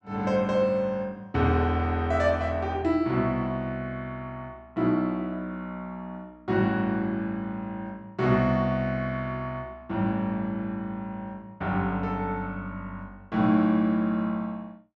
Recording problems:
none

